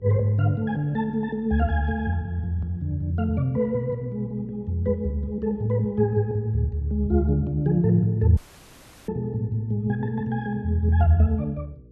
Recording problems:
electrical hum; 60 Hz, harmonics up to 480 Hz, SNR 26 dB
dropout; at 8.5 s for 0.5 s

